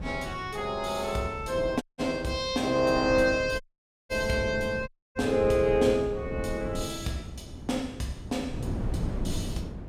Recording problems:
wind noise; below 240 Hz, SNR 10 dB
dropout; at 2 s, at 3.5 s and at 5 s

